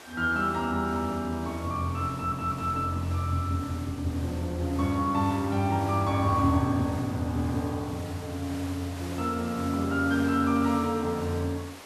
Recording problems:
hiss; slope -3 dB per octave, SNR 16 dB
stutter; at 2 s

